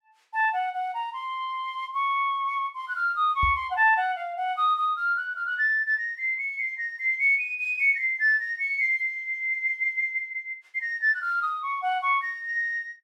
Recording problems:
knock on the microphone; at 3.5 s; peak -2 dB vs average level

